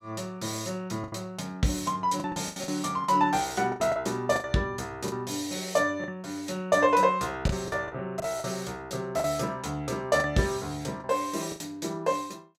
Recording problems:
lost packets; 8% of the sound replaced, filled with the last packet

